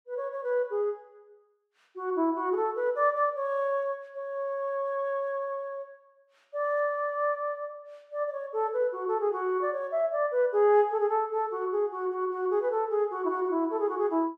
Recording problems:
none

